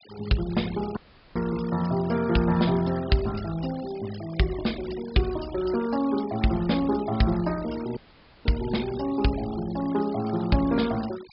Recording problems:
treble missing; nothing above 5.1 kHz
denoising artefacts; signal-to-artefact ratio 18 dB
dropout; at 1 s and at 8 s

